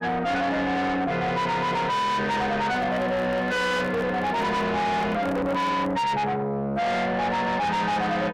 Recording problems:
distorted audio; soft clipping, signal-to-distortion ratio 6 dB
microphone handling noise; from 2.5 to 6 s; peak -3 dB vs average level

